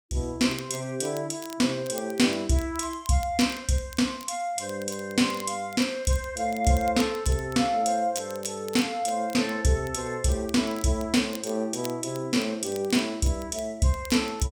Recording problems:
crackle; vinyl, SNR 20 dB

